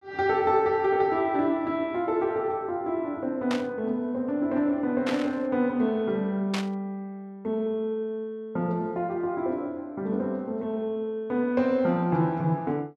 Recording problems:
burst of static; at 3.5 s, at 5 s and at 6.5 s; peak 0 dB vs average level

